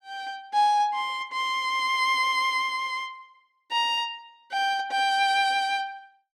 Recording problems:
none

